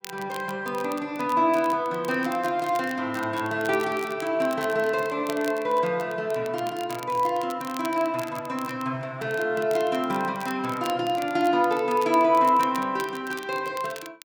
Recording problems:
crackling; vinyl, SNR 19 dB

